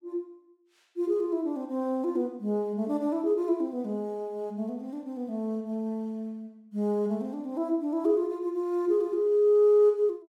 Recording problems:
none

